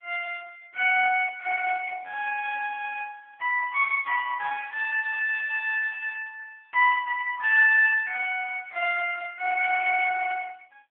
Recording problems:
phone line; 450 Hz to 2.9 kHz, AMR-NB

